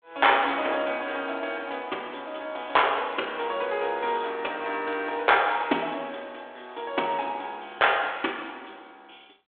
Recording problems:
phone line; 300 Hz to 3.5 kHz, G.726

